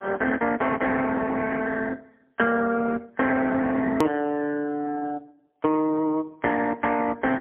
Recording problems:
telephone audio; 190 Hz to 3.2 kHz, AMR-NB, then MP3
hard cut with a click; at 4 s

